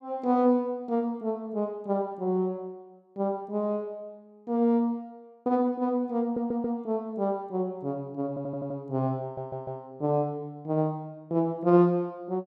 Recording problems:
audio stuttering; at 6 s, at 8.5 s and at 9 s

